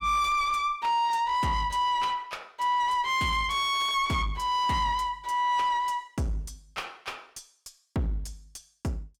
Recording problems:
distortion; soft clipping, signal-to-distortion ratio 7 dB

